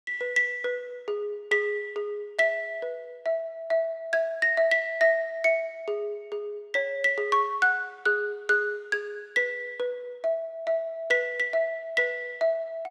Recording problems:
none

